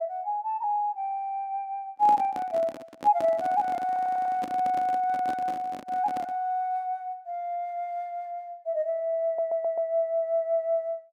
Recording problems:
microphone handling noise; from 2 to 6.5 s; peak -5 dB vs average level
stutter; at 4 s and at 9.5 s

